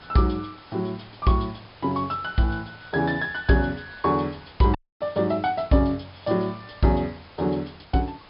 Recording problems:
low-pass filter; nothing above 5.5 kHz
hiss; SNR 22 dB
dropout; at 5 s

